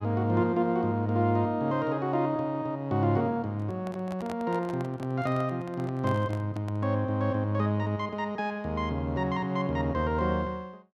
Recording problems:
handling noise; from 3.5 to 7 s; peak -6 dB vs average level

